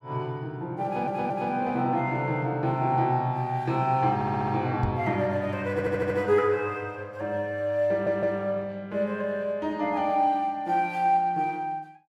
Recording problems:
stutter; 4 times, first at 1 s
microphone bump; at 5 s; peak +1 dB vs average level

